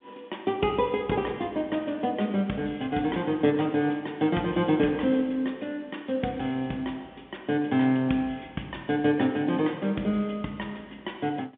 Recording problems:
telephone audio; 150 Hz to 3.6 kHz, G.711

